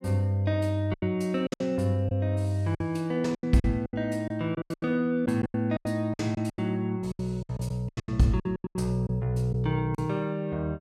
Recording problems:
lost packets; 15% of the sound replaced, filled with silence

